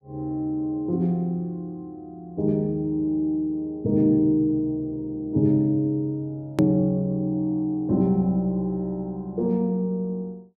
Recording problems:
edit click; at 6.5 s

